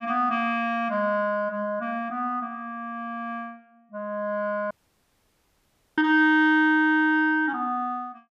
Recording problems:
audio cutting out; at 4.5 s for 1.5 s

